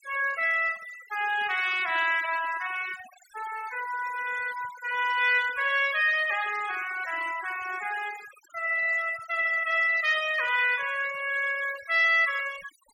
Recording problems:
noise reduction artefacts; signal-to-artefact ratio 16 dB
burst of static; at 1.5 s; peak -25 dB vs average level

